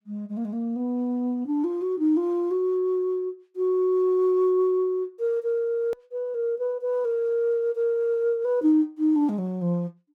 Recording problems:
edit click; at 6 s

